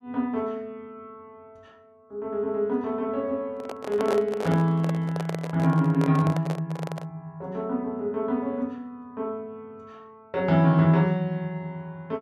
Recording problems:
microphone handling noise; from 3.5 to 7 s; peak 0 dB vs average level

